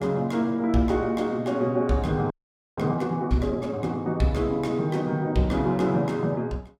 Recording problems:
audio freezing; at 2.5 s

